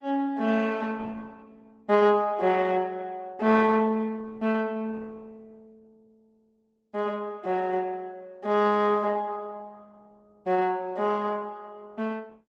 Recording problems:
codec artefacts; Opus, log-spectral distance 3 dB

